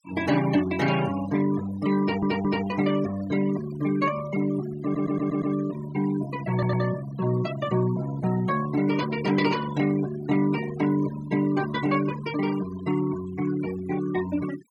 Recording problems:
noise reduction artefacts; signal-to-artefact ratio 14 dB
audio stuttering; at 2 s, at 5 s and at 6.5 s

